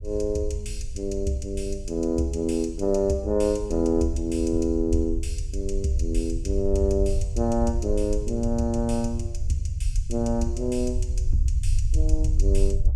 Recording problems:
low-frequency rumble; below 70 Hz, SNR 4 dB

